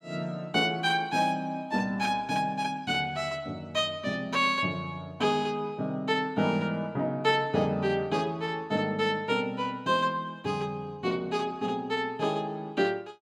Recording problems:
none

